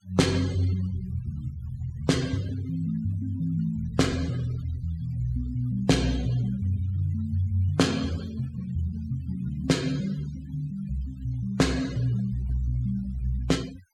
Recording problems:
denoising artefacts; signal-to-artefact ratio 20 dB

